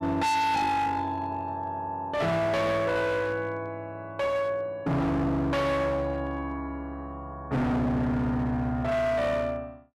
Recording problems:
distortion; hard clipping, signal-to-distortion ratio 6 dB

